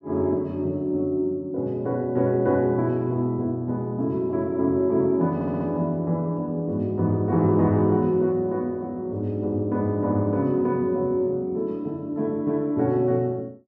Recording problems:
audio stuttering; at 5.5 s

